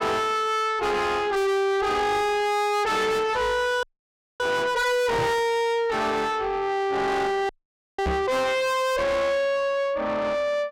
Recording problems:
distortion; soft clipping, signal-to-distortion ratio 5 dB
frozen audio; at 4 s for 0.5 s and at 7.5 s
knock on the microphone; at 5 s and at 8 s; peak +1 dB vs average level

